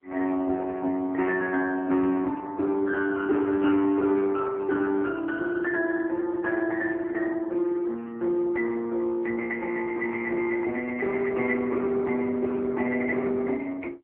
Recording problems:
phone line; 220 Hz to 3 kHz, AMR-NB

